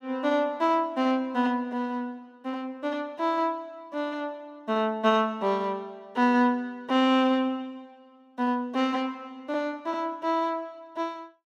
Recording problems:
none

